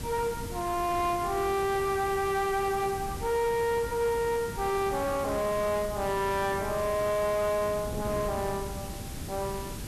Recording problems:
distorted audio; soft clipping, signal-to-distortion ratio 10 dB
hiss; slope 0 dB per octave, SNR 14 dB
wind noise; below 270 Hz, SNR 11 dB

